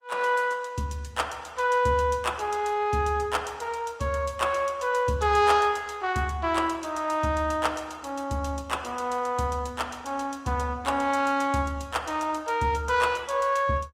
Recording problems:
codec artefacts; Opus, log-spectral distance 3 dB, nothing above 18.9 kHz

